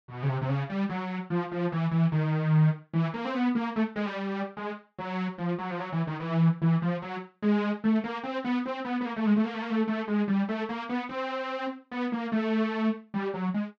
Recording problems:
none

